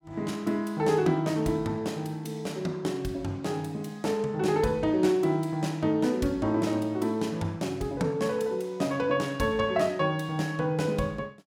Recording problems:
none

